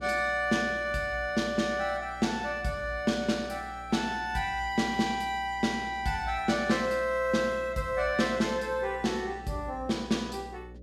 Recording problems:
hum; 60 Hz, harmonics up to 600 Hz, SNR 19 dB

